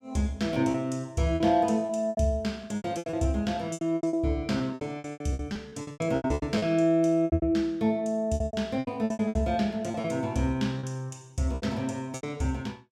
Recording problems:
packet loss; 18% of the sound replaced, filled with repeated pitch periods

